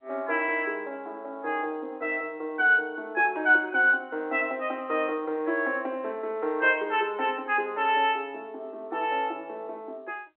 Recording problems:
phone line; 280 Hz to 3.3 kHz, G.711

